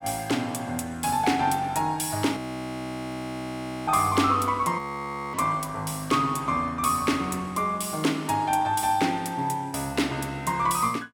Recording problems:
audio freezing; at 2.5 s for 1.5 s and at 5 s for 0.5 s

